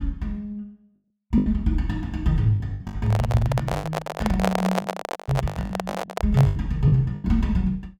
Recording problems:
packet loss; 12% of the sound replaced, filled with the last packet
microphone handling noise; from 3 to 6.5 s; peak +4 dB vs average level

